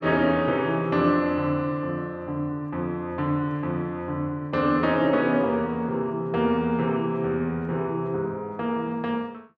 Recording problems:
none

